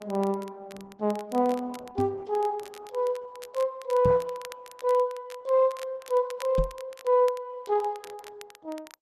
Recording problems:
lossy compression; Opus, log-spectral distance 2 dB
crackling; vinyl, SNR 22 dB
microphone thump; at 2 s, at 4 s and at 6.5 s; peak +2 dB vs average level

